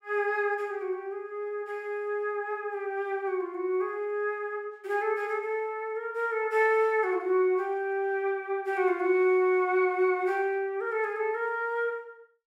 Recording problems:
none

